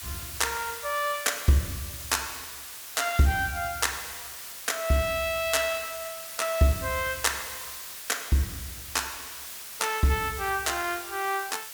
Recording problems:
hiss; slope +2 dB per octave, SNR 9 dB

